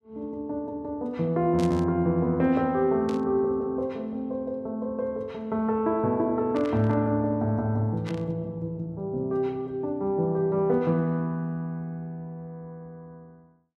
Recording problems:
static burst; 4 times, first at 1.5 s; peak -9 dB vs average level

